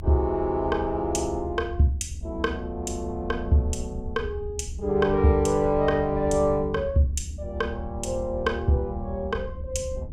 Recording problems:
low-frequency rumble; below 78 Hz, SNR 10 dB

